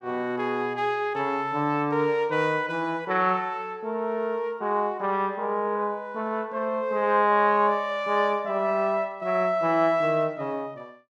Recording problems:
none

